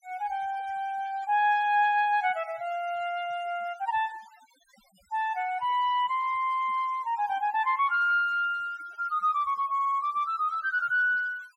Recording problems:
denoising artefacts; signal-to-artefact ratio 27 dB
audio stuttering; at 9.5 s

